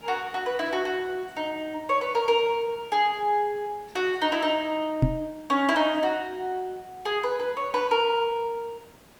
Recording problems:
background hiss; slope -5 dB per octave, SNR 26 dB
knock on the microphone; at 5 s; peak +8 dB vs average level

